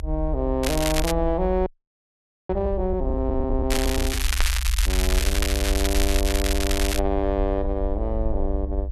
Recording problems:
rumble; below 64 Hz, SNR 1 dB
crackle; at 0.5 s and from 3.5 to 7 s; loose cable, SNR 1 dB
frozen audio; at 1.5 s for 1 s

